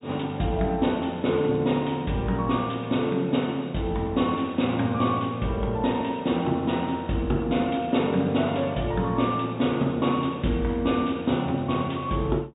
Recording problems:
treble missing; nothing above 4 kHz

